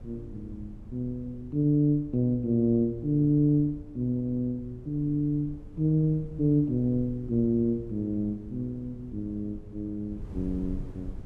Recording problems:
wind noise; below 120 Hz, SNR 17 dB

